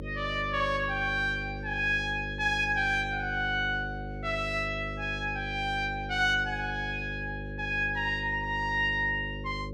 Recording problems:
hum; 50 Hz, harmonics up to 550 Hz, SNR 9 dB

